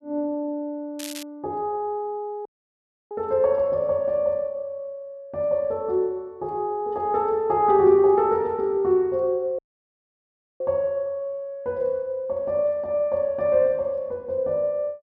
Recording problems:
crackling; at 1 s; loose cable, SNR 14 dB
audio cutting out; at 2.5 s for 0.5 s and at 9.5 s for 1 s

